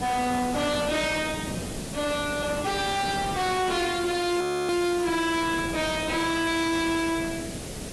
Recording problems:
lossy codec; AAC, log-spectral distance 9 dB
distorted audio; soft clipping, signal-to-distortion ratio 7 dB
electrical hum; 60 Hz, harmonics up to 720 Hz, SNR 22 dB
background hiss; slope 0 dB per octave, SNR 12 dB
wind noise; below 500 Hz, SNR 12 dB
frozen audio; at 4.5 s

